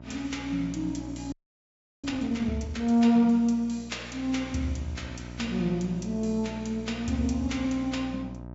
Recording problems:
treble cut off; nothing above 7.6 kHz
hum; 60 Hz, harmonics up to 1.3 kHz, SNR 14 dB
frozen audio; at 1.5 s for 0.5 s

